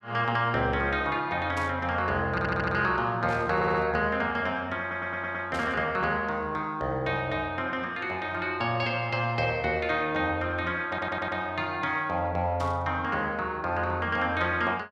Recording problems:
burst of static; 4 times, first at 1.5 s; peak -10 dB vs average level
stutter; 4 times, first at 2.5 s

